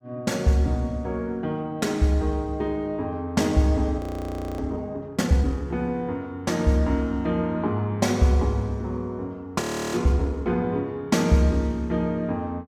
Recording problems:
audio freezing; at 4 s for 0.5 s and at 9.5 s

